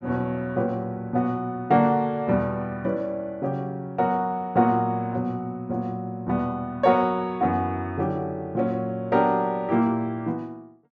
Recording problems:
none

